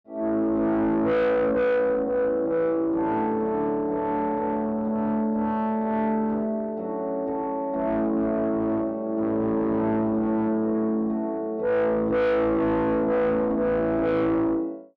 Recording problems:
distorted audio; soft clipping, signal-to-distortion ratio 7 dB

